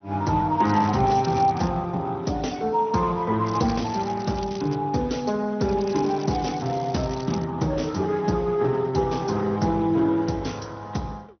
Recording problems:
treble missing; nothing above 6.1 kHz
lossy compression; Speex, log-spectral distance 5 dB
crackling; from 0.5 to 1.5 s, from 3.5 to 5 s and from 5.5 to 7.5 s; loose cable, SNR 19 dB

